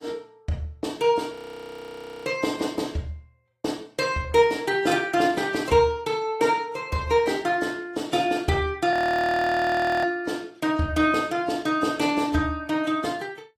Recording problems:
lossy codec; AAC, log-spectral distance 3 dB
frozen audio; at 1.5 s for 1 s and at 9 s for 1 s

